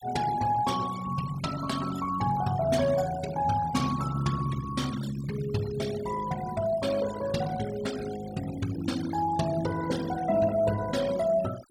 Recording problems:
denoising artefacts; signal-to-artefact ratio 14 dB

